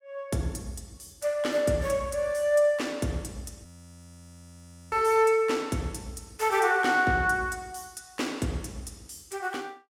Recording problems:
audio freezing; at 3.5 s for 1.5 s

